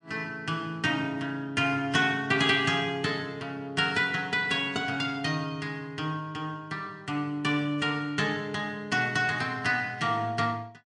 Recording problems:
lossy compression; MP3, log-spectral distance 2 dB, nothing above 9.5 kHz

